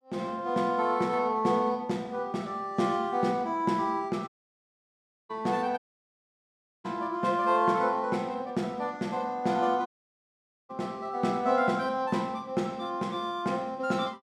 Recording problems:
audio cutting out; at 4.5 s for 1 s, at 6 s for 1 s and at 10 s for 1 s

